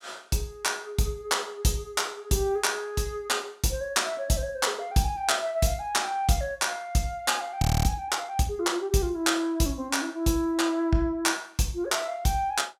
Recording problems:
audio freezing; at 7.5 s

